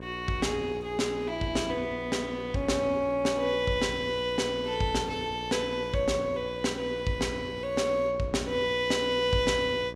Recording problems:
mains hum; 60 Hz, harmonics up to 1.7 kHz, SNR 14 dB

